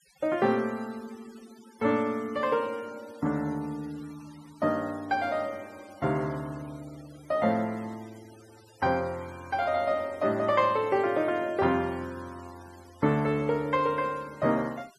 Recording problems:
noise reduction artefacts; signal-to-artefact ratio 25 dB

